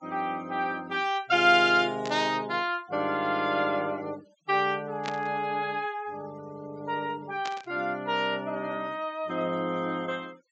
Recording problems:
low-pass filter; nothing above 8 kHz
noise reduction artefacts; signal-to-artefact ratio 26 dB
static burst; at 2 s, at 5 s and at 7.5 s; peak -4 dB vs average level

